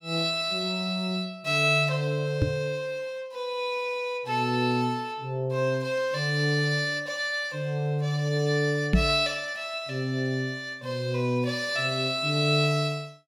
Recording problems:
microphone thump; at 2.5 s and at 9 s; peak +8 dB vs average level

